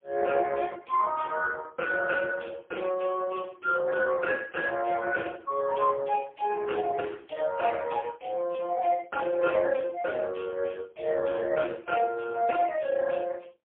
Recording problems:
telephone audio; 300 Hz to 2.1 kHz, AMR-NB, then MP3

